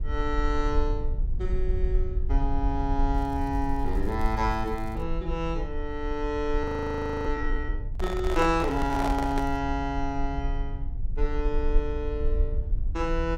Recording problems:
rumble; below 52 Hz, strongest tone 22 Hz, SNR 2 dB
crackling; from 3 to 5 s and at 8.5 s; loose cable, SNR 28 dB
audio freezing; at 6.5 s for 0.5 s
microphone handling noise; from 8 to 9.5 s; peak +2 dB vs average level

